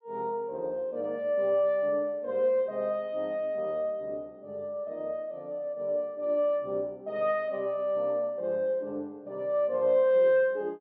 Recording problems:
none

